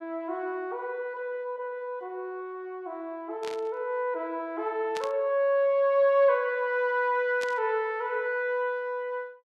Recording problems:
burst of static; at 3.5 s, at 5 s and at 7.5 s; peak -6 dB vs average level

